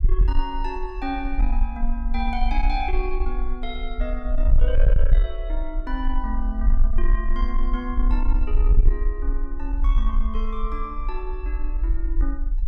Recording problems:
distortion; soft clipping, signal-to-distortion ratio 11 dB
low-frequency rumble; below 44 Hz, strongest tone 22 Hz, SNR -6 dB

